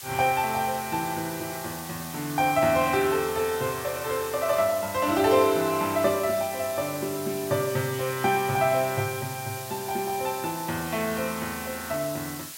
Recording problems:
hiss; slope +2 dB per octave, SNR 11 dB

